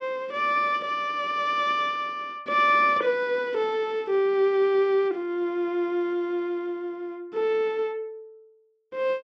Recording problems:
none

